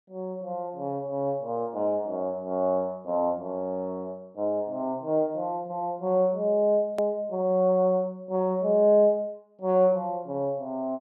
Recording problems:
hard cut with a click; at 7 s

